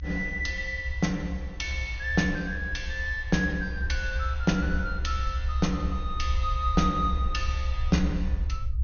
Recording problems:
treble cut off; nothing above 6.6 kHz
low-frequency rumble; below 70 Hz, SNR 3 dB

